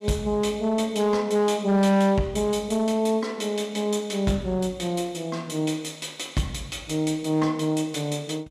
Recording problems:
distortion; hard clipping, uneven, signal-to-distortion ratio 11 dB

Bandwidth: 14 kHz